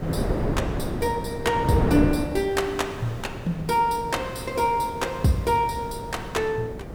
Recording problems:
hiss; slope 0 dB per octave, SNR 28 dB
wind noise; below 460 Hz, SNR 5 dB

